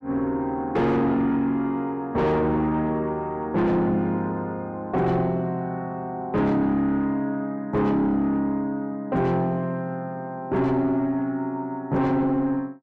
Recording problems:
distortion; soft clipping, signal-to-distortion ratio 6 dB

